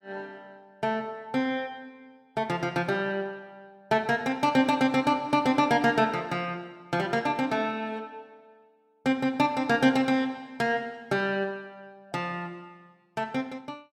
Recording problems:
none

